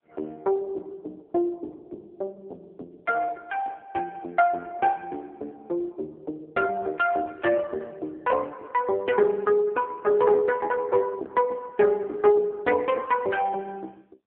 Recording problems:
telephone audio; 260 Hz to 2.3 kHz, AMR-NB

